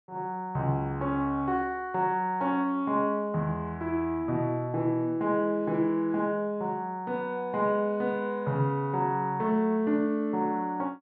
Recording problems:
none

